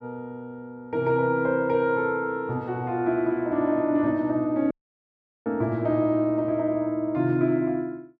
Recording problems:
dropout; at 4.5 s for 1 s

